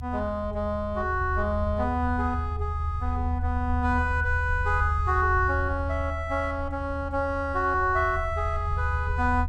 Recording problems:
low-frequency rumble; below 80 Hz, strongest tone 78 Hz, SNR 4 dB

